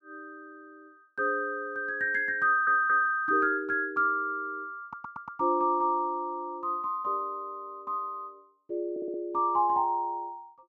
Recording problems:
audio stuttering; at 2.5 s, at 5 s and at 9 s

